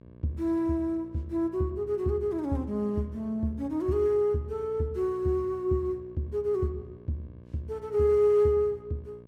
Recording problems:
hum; 60 Hz, harmonics up to 1.1 kHz, SNR 22 dB

